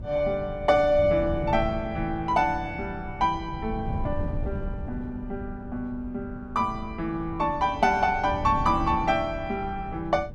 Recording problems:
wind on the microphone; below 140 Hz, SNR 10 dB

